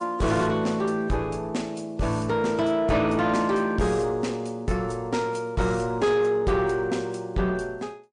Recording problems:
lossy codec; MP3, log-spectral distance 2 dB, nothing above 9.5 kHz
distorted audio; soft clipping, signal-to-distortion ratio 11 dB

